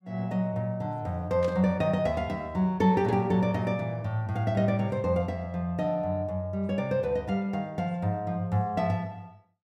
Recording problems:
static burst; at 1.5 s; peak -12 dB vs average level

